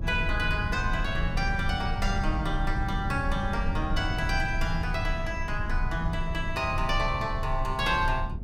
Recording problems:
low-frequency rumble; below 96 Hz, strongest tone 28 Hz, SNR 3 dB

